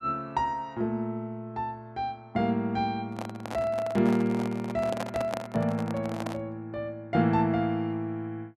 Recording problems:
microphone handling noise; from 3 to 6.5 s; peak 0 dB vs average level

